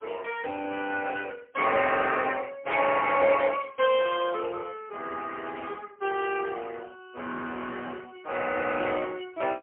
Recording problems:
phone line; 240 Hz to 3.1 kHz, AMR-NB, then MP3

